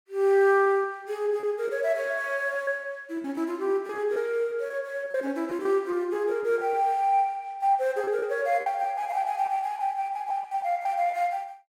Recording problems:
lost packets; 8% of the sound replaced, filled with repeated pitch periods

